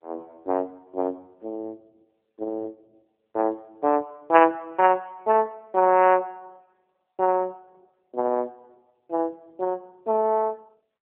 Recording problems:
telephone audio; 240 Hz to 3.1 kHz, AMR-NB

